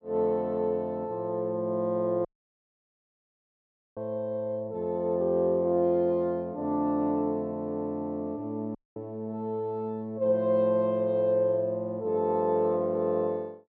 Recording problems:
audio cutting out; at 2.5 s for 1.5 s and at 9 s

